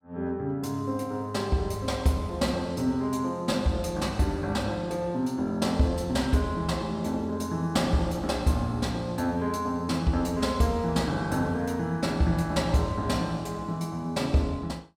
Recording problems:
none

